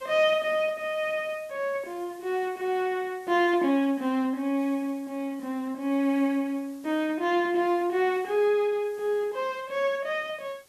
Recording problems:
hiss; slope -2 dB per octave, SNR 28 dB

